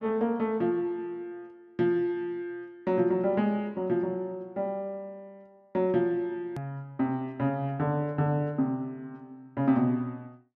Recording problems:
edit click; at 6.5 s

